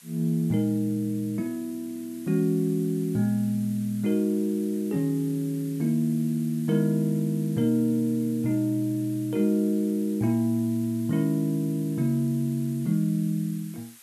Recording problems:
background hiss; SNR 22 dB

